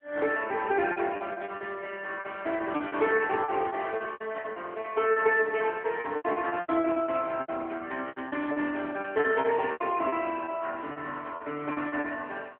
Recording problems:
phone line; 260 Hz to 3.1 kHz, AMR-NB
packet loss; 16% of the sound replaced, filled with repeated pitch periods
crackling; from 2.5 to 4.5 s, at 5.5 s and from 8 to 9.5 s; loose cable, SNR 27 dB

